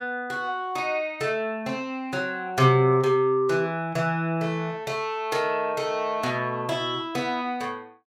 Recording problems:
none

